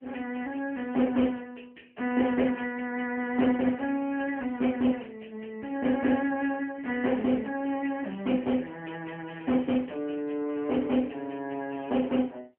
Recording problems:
phone line; 190 Hz to 3.1 kHz, AMR-NB

